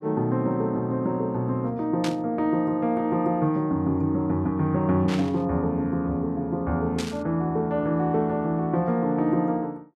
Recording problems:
static burst; at 2 s, at 5 s and at 7 s; peak -4 dB vs average level

